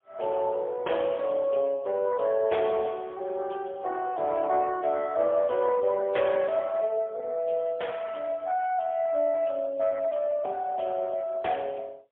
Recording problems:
telephone audio; 320 Hz to 3.4 kHz, AMR-NB, then MP3

